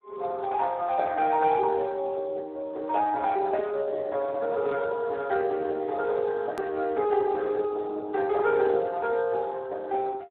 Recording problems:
phone line; 320 Hz to 2.3 kHz, Speex
edit click; at 6.5 s

